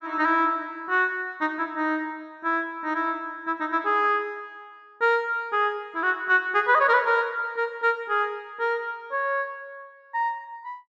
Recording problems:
none

